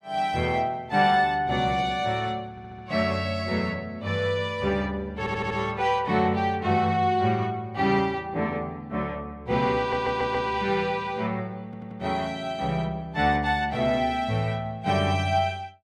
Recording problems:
stutter; 4 times, first at 2.5 s

